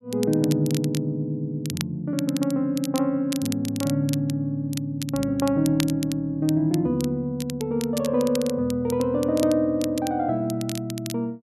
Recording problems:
crackle; vinyl, SNR 13 dB

